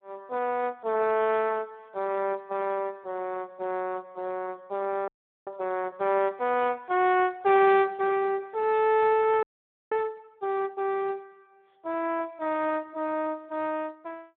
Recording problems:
phone line; 260 Hz to 3.9 kHz, Speex
audio freezing; at 5 s and at 9.5 s

